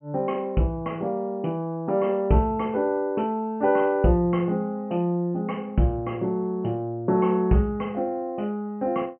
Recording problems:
low-pass filter; nothing above 3.1 kHz

